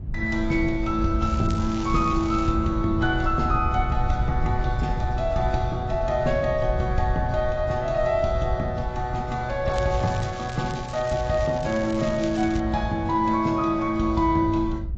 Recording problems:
lossy codec; AAC, log-spectral distance 2 dB
wind on the microphone; below 94 Hz, SNR 8 dB
crackle; from 1 to 2.5 s and from 9.5 to 13 s; loose cable, SNR 18 dB

